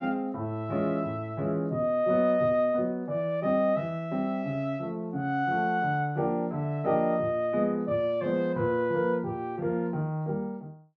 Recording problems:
none

